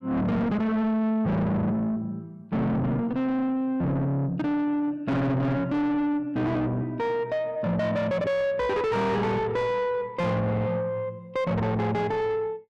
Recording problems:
distorted audio; soft clipping, signal-to-distortion ratio 6 dB

